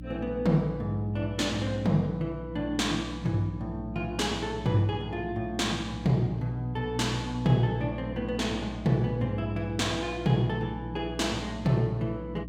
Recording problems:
hum; 60 Hz, harmonics up to 300 Hz, SNR 11 dB

